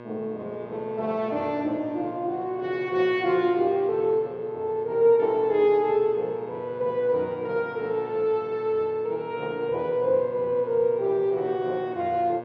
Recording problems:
hum; 60 Hz, harmonics up to 2.2 kHz, SNR 18 dB

